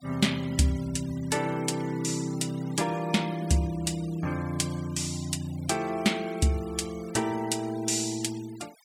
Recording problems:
noise reduction artefacts; signal-to-artefact ratio 19 dB

